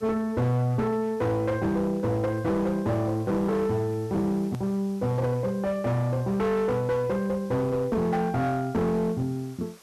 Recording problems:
distorted audio; hard clipping, signal-to-distortion ratio 10 dB
background hiss; slope -1 dB per octave, SNR 27 dB
edit click; at 4.5 s

